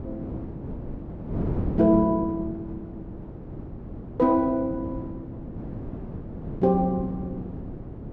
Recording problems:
wind noise; below 310 Hz, SNR 10 dB

